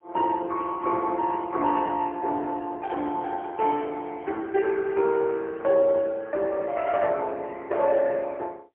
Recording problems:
phone line; 240 Hz to 3.1 kHz, AMR-NB, then MP3

